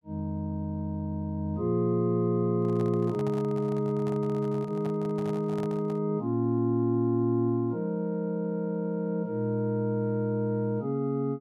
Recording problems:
microphone handling noise; from 2.5 to 6 s; peak -9 dB vs average level

